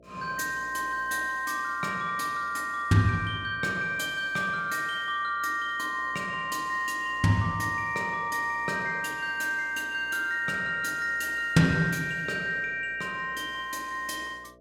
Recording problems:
hum; 60 Hz, harmonics up to 660 Hz, SNR 26 dB

